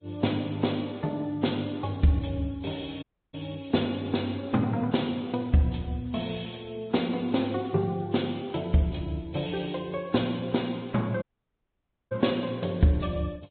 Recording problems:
treble missing; nothing above 4 kHz
lossy codec; Vorbis, log-spectral distance 6 dB
audio cutting out; at 3 s and at 11 s for 1 s

